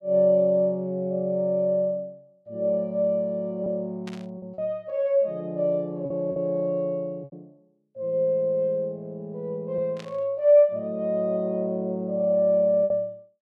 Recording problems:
packet loss; 3% of the sound replaced, filled with repeated pitch periods
static burst; at 4 s and at 10 s; peak -13 dB vs average level

